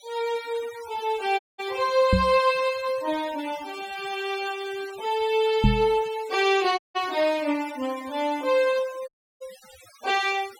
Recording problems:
denoising artefacts; signal-to-artefact ratio 19 dB
audio cutting out; at 1.5 s, at 7 s and at 9 s
microphone thump; at 2 s and at 5.5 s; peak +9 dB vs average level

